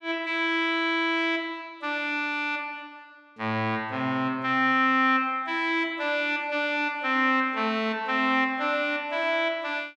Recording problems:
none

